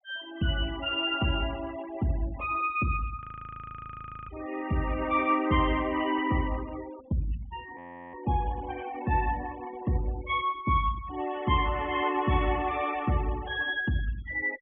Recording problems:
treble cut off; nothing above 3.3 kHz
denoising artefacts; signal-to-artefact ratio 17 dB
frozen audio; at 3 s for 1 s and at 8 s

